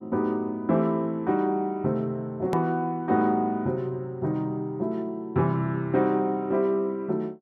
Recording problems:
click at an edit; at 2.5 s

